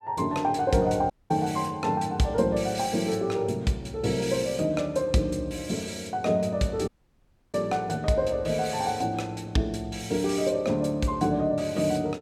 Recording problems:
dropout; at 1 s and at 7 s for 0.5 s

